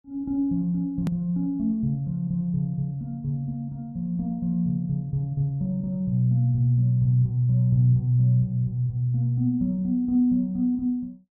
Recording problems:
edit click; at 1 s

